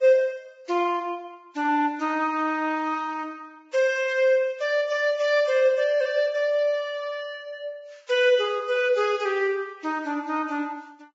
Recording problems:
codec artefacts; Vorbis, log-spectral distance 2 dB

